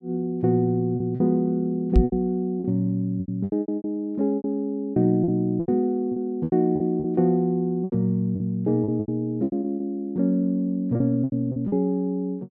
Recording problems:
packet loss; 13% of the sound replaced, filled with repeated pitch periods
microphone bump; at 2 s; peak +9 dB vs average level

